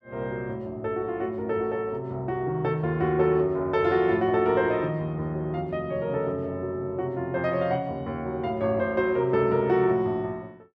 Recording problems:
none

